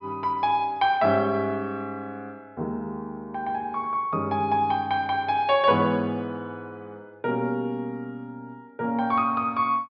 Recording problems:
treble cut off; nothing above 5.5 kHz

